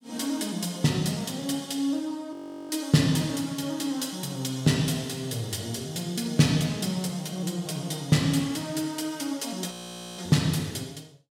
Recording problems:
frozen audio; at 2.5 s and at 9.5 s

